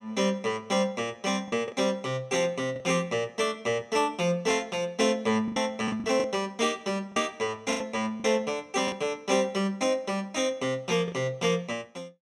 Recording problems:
lost packets; 5% of the sound replaced, filled with the last packet

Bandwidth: 14 kHz